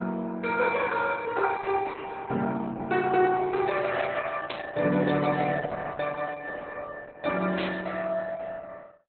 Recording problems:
lossy compression; Opus, log-spectral distance 4 dB, nothing above 3.9 kHz
static burst; at 4.5 s and at 7.5 s; peak 0 dB vs average level

